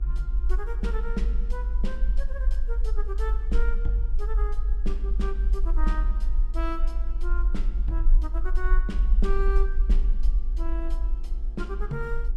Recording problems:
electrical hum; 60 Hz, harmonics up to 1.7 kHz, SNR 18 dB
rumble; below 48 Hz, strongest tone 22 Hz, SNR -9 dB

